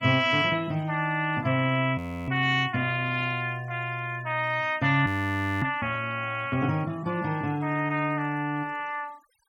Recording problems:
noise reduction artefacts; signal-to-artefact ratio 27 dB
frozen audio; at 2 s and at 5 s for 0.5 s

